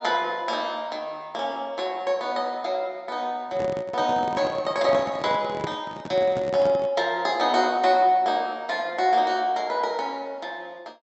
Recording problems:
treble cut off; nothing above 7.8 kHz
handling noise; from 3.5 to 7 s; peak -2 dB vs average level

